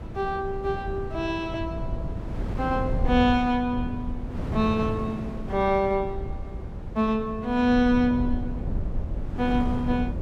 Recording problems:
rumble; below 110 Hz, SNR 9 dB
wind on the microphone; below 260 Hz, SNR 11 dB

